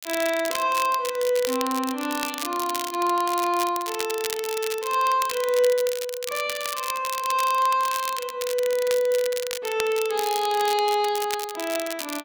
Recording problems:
crackling; vinyl, SNR 9 dB

